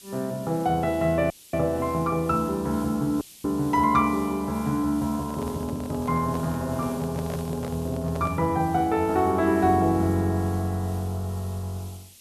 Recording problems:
background hiss; SNR 20 dB
dropout; at 1.5 s and at 3 s
handling noise; from 5 to 8.5 s; peak -7 dB vs average level

